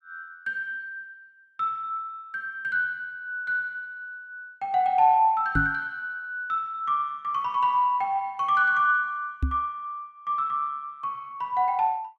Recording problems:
knock on the microphone; at 5.5 s and at 9.5 s; peak +4 dB vs average level

